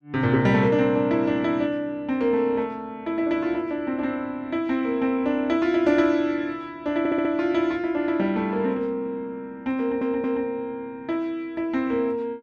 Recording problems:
stutter; at 7 s and at 10 s

